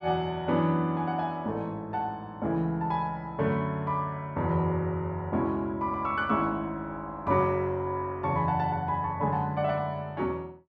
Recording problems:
none

